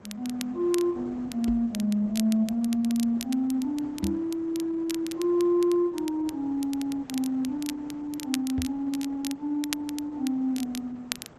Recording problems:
lossy compression; Opus, log-spectral distance 2 dB
background hiss; SNR 23 dB
crackling; vinyl, SNR 13 dB
microphone thump; at 1.5 s, at 4 s and at 8.5 s; peak +3 dB vs average level

